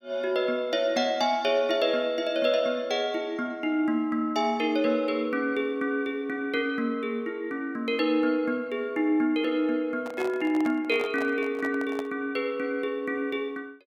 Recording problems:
handling noise; from 10 to 12 s; peak -5 dB vs average level

